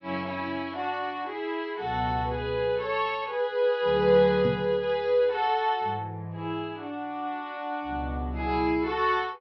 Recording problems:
treble missing; nothing above 5.9 kHz
knock on the microphone; at 4.5 s; peak 0 dB vs average level

